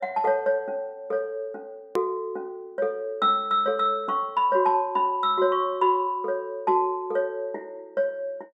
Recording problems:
hard cut with a click; at 2 s

